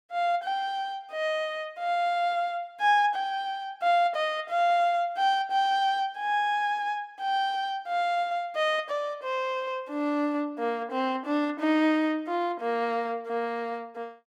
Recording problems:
none

